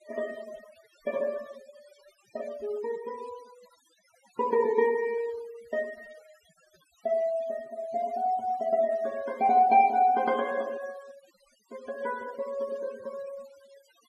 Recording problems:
noise reduction artefacts; signal-to-artefact ratio 23 dB

